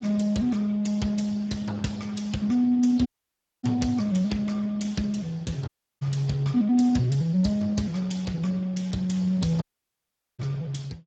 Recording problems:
lossy compression; Speex, log-spectral distance 3 dB, nothing above 7.6 kHz
audio cutting out; at 3 s for 0.5 s, at 5.5 s and at 9.5 s for 1 s

